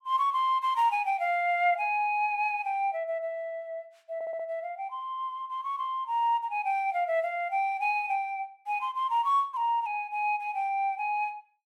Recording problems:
audio stuttering; at 4 s

